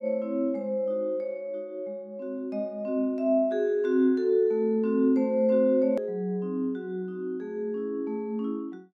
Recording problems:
hard cut with a click; at 6 s

